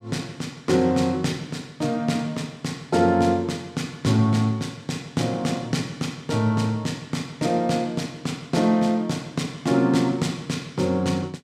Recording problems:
none

